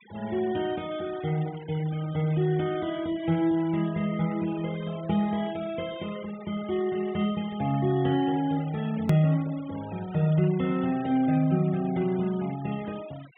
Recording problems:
low-pass filter; nothing above 3.6 kHz
noise reduction artefacts; signal-to-artefact ratio 20 dB
hard cut with a click; at 9 s

